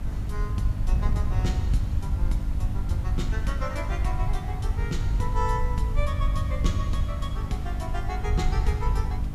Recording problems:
hum; 50 Hz, harmonics up to 300 Hz, SNR 1 dB
background hiss; SNR 14 dB
low-frequency rumble; below 84 Hz, SNR -5 dB
wind noise; below 120 Hz, SNR 6 dB

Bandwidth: 14.5 kHz